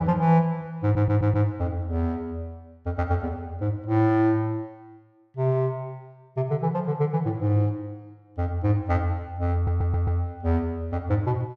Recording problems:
stutter; at 1 s and at 9.5 s

